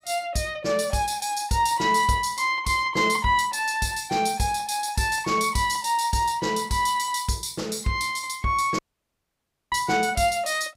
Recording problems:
audio cutting out; at 9 s for 1 s

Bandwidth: 15.5 kHz